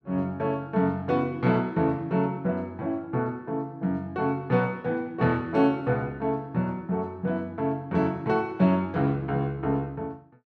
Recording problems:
none

